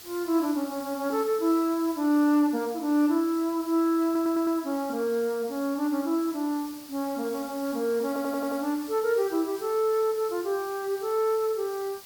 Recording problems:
background hiss; slope 0 dB per octave, SNR 17 dB
stutter; at 4 s and at 8 s

